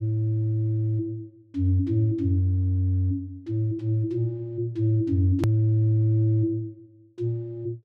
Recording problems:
hard cut with a click; at 5.5 s

